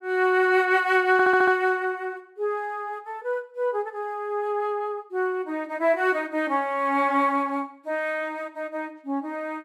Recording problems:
stutter; at 1 s

